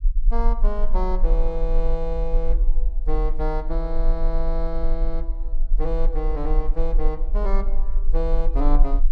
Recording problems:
rumble; below 36 Hz, strongest tone 24 Hz, SNR -5 dB

